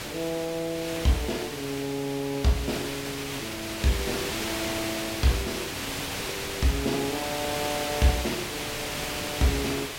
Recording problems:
background hiss; slope -2 dB per octave, SNR 2 dB

